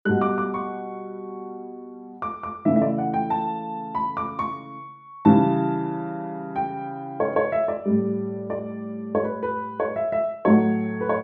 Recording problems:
none

